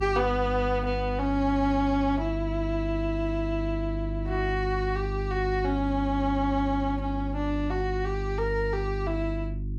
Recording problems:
hum; 50 Hz, harmonics up to 350 Hz, SNR 5 dB

